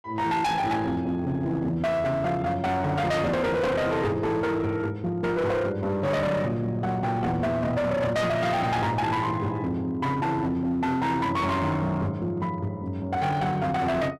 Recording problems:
distortion; hard clipping, signal-to-distortion ratio 8 dB

